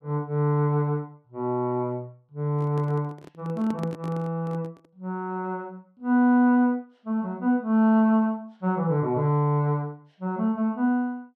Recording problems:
microphone handling noise; from 2.5 to 5 s; peak -6 dB vs average level

